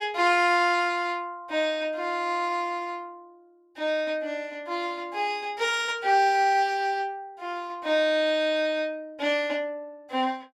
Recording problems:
none

